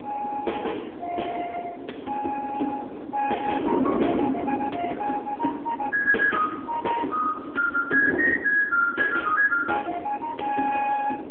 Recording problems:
phone line; 240 Hz to 3.4 kHz, AMR-NB
wind noise; below 450 Hz, SNR 8 dB

